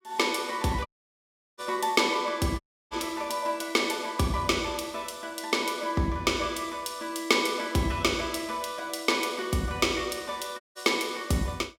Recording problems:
dropout; at 1 s for 0.5 s, at 2.5 s and at 11 s

